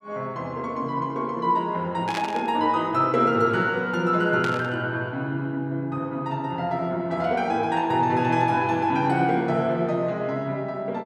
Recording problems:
static burst; at 2 s and at 4.5 s; peak -4 dB vs average level

